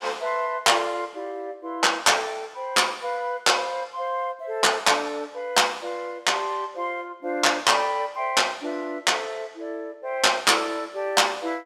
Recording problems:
none

